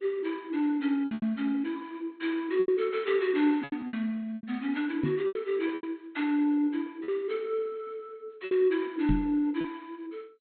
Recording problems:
lossy codec; MP2, log-spectral distance 2 dB, nothing above 4.2 kHz
lost packets; 7% of the sound replaced, filled with repeated pitch periods
knock on the microphone; at 5 s and at 9 s; peak +4 dB vs average level

